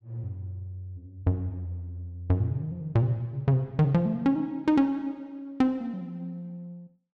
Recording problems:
none

